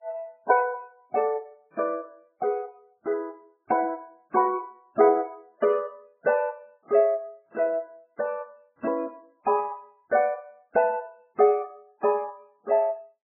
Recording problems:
lossy compression; MP3, then MP3, log-spectral distance 2 dB, nothing above 2.5 kHz

